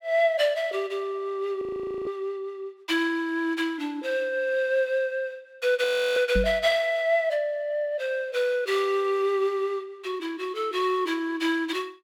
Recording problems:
frozen audio; at 1.5 s and at 6 s
knock on the microphone; at 6.5 s; peak +2 dB vs average level

